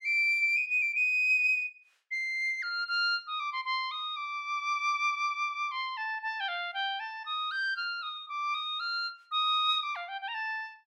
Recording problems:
none

